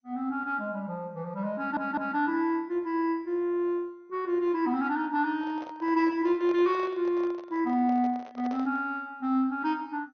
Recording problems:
codec artefacts; MP2, log-spectral distance 2 dB
stutter; at 1.5 s
microphone handling noise; from 5.5 to 9 s; peak -10 dB vs average level

